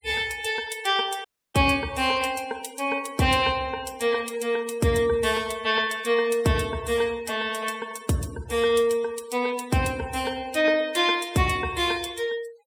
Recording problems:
noise reduction artefacts; signal-to-artefact ratio 20 dB
dropout; at 1.5 s

